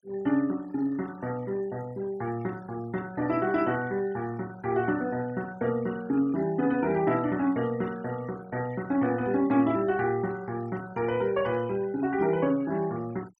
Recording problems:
denoising artefacts; signal-to-artefact ratio 21 dB

